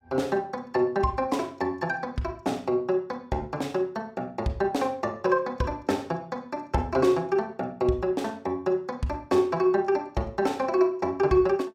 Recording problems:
none

